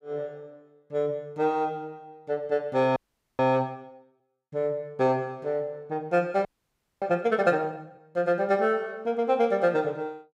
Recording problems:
frozen audio; at 3 s and at 6.5 s for 0.5 s

